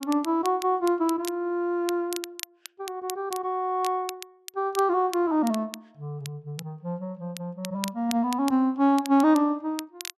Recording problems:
crackling; vinyl, SNR 15 dB

